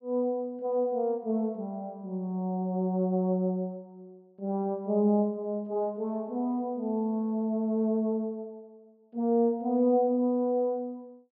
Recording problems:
treble cut off; nothing above 5.5 kHz

